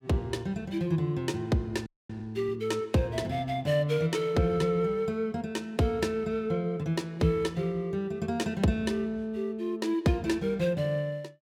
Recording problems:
frozen audio; at 2 s

